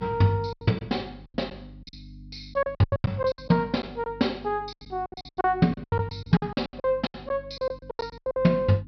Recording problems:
treble cut off; nothing above 5.5 kHz
hum; 50 Hz, harmonics up to 300 Hz, SNR 20 dB
packet loss; 20% of the sound replaced, filled with silence

